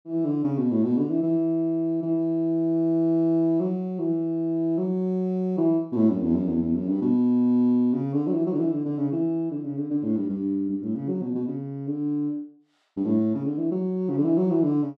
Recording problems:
none

